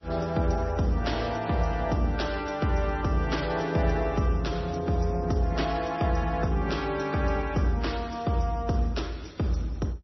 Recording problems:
lossy codec; MP3, then MP3, log-spectral distance 4 dB, nothing above 5.8 kHz

